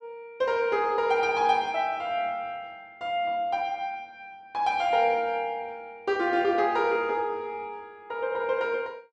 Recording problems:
none

